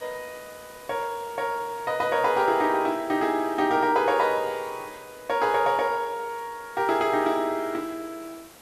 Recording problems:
background hiss; slope -3 dB per octave, SNR 22 dB

